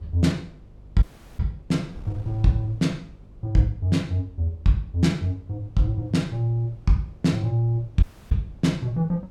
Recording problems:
hum; 50 Hz, harmonics up to 600 Hz, SNR 26 dB
wind on the microphone; below 140 Hz, SNR 24 dB
dropout; at 1 s and at 8 s

